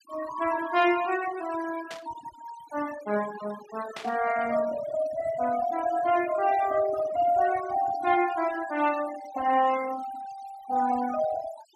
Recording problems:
noise reduction artefacts; signal-to-artefact ratio 14 dB
burst of static; at 2 s and at 4 s; peak -7 dB vs average level

